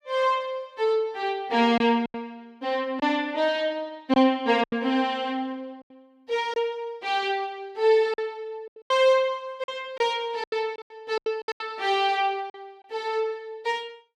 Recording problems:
packet loss; 7% of the sound replaced, filled with silence

